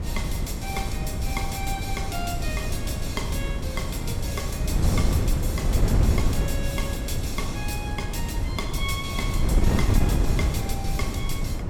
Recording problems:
wind noise; below 150 Hz, SNR -6 dB

